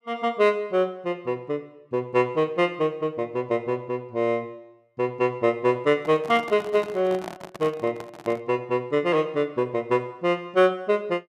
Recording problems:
microphone handling noise; from 6 to 8.5 s; peak -7 dB vs average level

